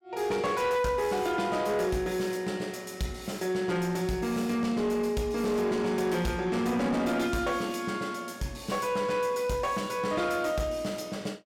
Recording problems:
distortion; soft clipping, signal-to-distortion ratio 12 dB

